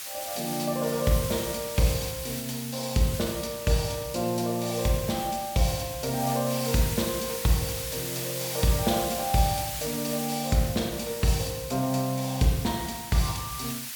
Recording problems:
hiss; slope +3 dB per octave, SNR 6 dB

